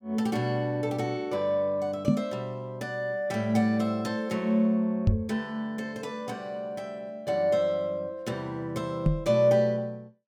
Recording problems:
microphone thump; at 2 s, at 5 s and at 9 s; peak +9 dB vs average level

